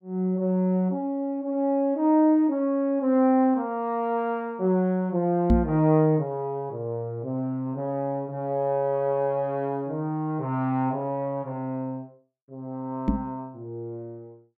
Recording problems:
knock on the microphone; at 5.5 s and at 13 s; peak +8 dB vs average level

